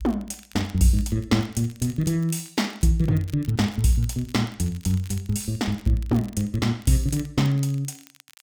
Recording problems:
crackling; vinyl, SNR 24 dB

